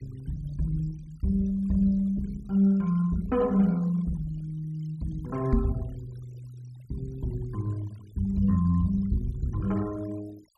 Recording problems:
noise reduction artefacts; signal-to-artefact ratio 26 dB
microphone bump; at 5.5 s; peak +7 dB vs average level

